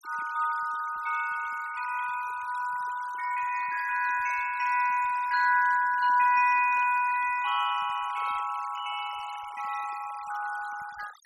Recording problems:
denoising artefacts; signal-to-artefact ratio 17 dB

